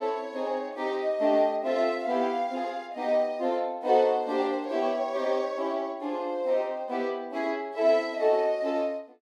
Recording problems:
none

